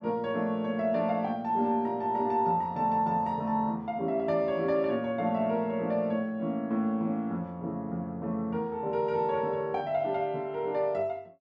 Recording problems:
none

